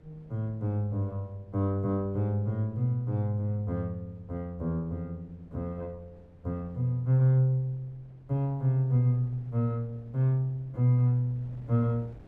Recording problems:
wind noise; below 270 Hz, SNR 27 dB

